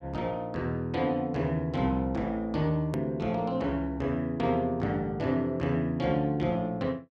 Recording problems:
edit click; at 3 s

